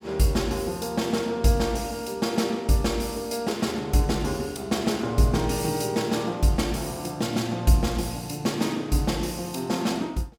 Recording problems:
none

